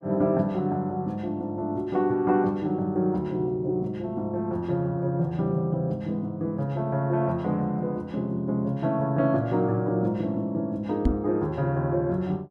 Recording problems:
microphone bump; at 11 s; peak +6 dB vs average level

